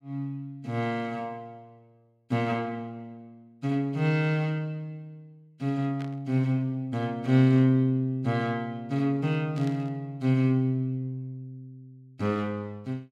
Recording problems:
burst of static; at 6 s and at 9.5 s; peak -14 dB vs average level

